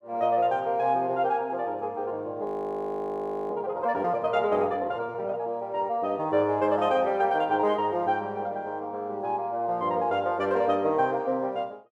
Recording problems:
frozen audio; at 2.5 s for 1 s

